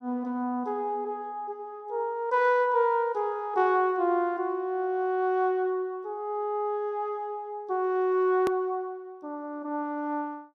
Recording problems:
click at an edit; at 8.5 s

